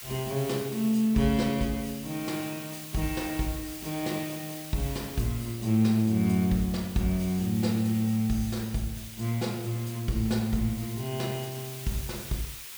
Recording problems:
background hiss; slope +2 dB per octave, SNR 12 dB

